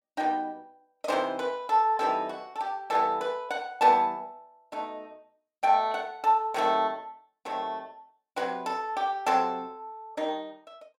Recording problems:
none

